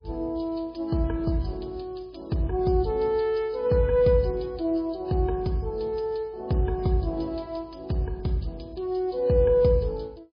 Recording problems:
codec artefacts; MP3, log-spectral distance 3 dB, nothing above 5 kHz

